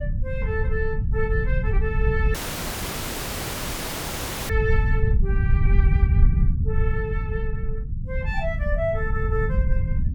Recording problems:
low-frequency rumble; below 90 Hz, SNR -6 dB
audio cutting out; at 2.5 s for 2 s

